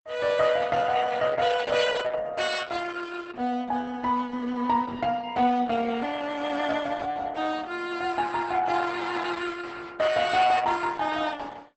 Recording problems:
lossy compression; Opus, log-spectral distance 5 dB, nothing above 8.2 kHz

